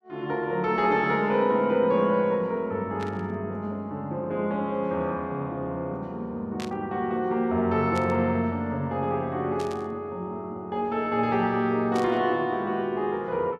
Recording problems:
static burst; 5 times, first at 3 s; peak -8 dB vs average level

